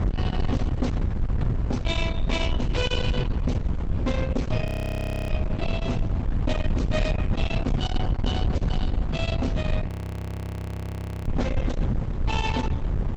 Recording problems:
codec artefacts; Opus, log-spectral distance 2 dB, nothing above 20.1 kHz
distorted audio; soft clipping, signal-to-distortion ratio 8 dB
wind on the microphone; below 150 Hz, SNR -1 dB
frozen audio; at 4.5 s for 0.5 s and at 10 s for 1.5 s

